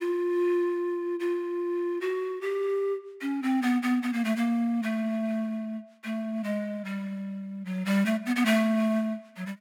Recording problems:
none

